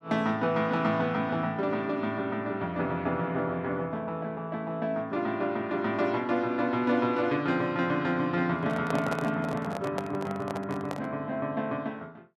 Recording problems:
handling noise; from 8.5 to 11 s; peak +1 dB vs average level

